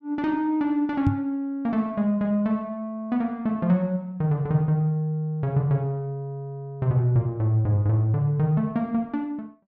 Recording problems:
knock on the microphone; at 1 s; peak +5 dB vs average level

